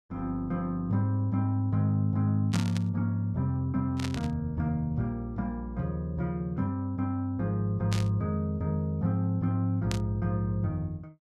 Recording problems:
burst of static; 4 times, first at 2.5 s; peak -2 dB vs average level

